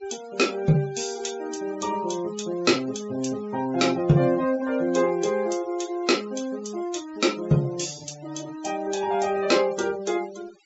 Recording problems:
treble cut off; nothing above 7.6 kHz
denoising artefacts; signal-to-artefact ratio 19 dB

